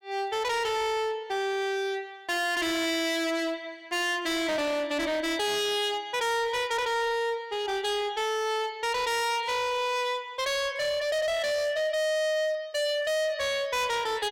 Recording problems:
distorted audio; hard clipping, signal-to-distortion ratio 6 dB

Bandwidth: 16.5 kHz